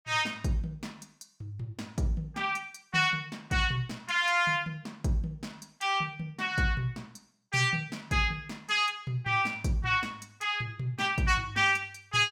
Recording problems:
none

